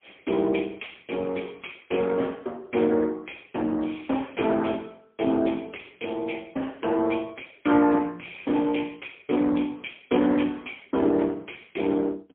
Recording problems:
phone line; 190 Hz to 3.4 kHz, AMR-NB, then MP3

